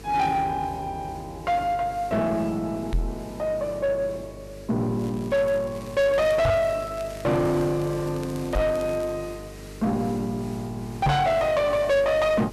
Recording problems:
distorted audio; soft clipping, signal-to-distortion ratio 7 dB
electrical hum; 50 Hz, harmonics up to 450 Hz, SNR 17 dB
background hiss; slope -3 dB per octave, SNR 21 dB
knock on the microphone; 4 times, first at 3 s; peak +6 dB vs average level
crackle; from 5 to 9 s; loose cable, SNR 24 dB

